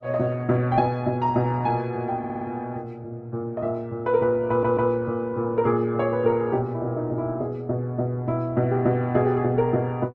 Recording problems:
codec artefacts; Opus, log-spectral distance 2 dB
audio stuttering; at 2 s and at 4.5 s

